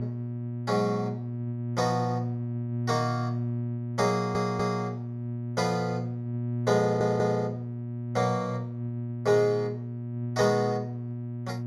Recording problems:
electrical hum; 60 Hz, harmonics up to 600 Hz, SNR 5 dB
stutter; at 4 s and at 7 s

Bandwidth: 15.5 kHz